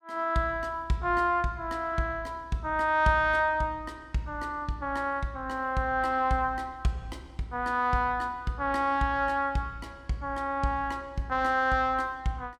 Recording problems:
none

